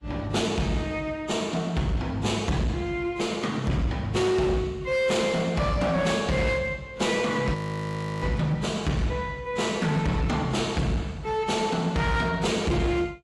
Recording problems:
lossy codec; AAC, log-spectral distance 2 dB, nothing above 11.3 kHz
distorted audio; hard clipping, uneven, signal-to-distortion ratio 10 dB
audio freezing; at 7.5 s for 0.5 s

